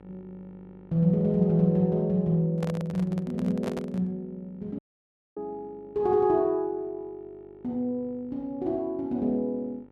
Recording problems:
electrical hum; 50 Hz, harmonics up to 1.4 kHz, SNR 28 dB
microphone handling noise; from 2.5 to 4 s; peak -5 dB vs average level
dropout; at 5 s for 0.5 s

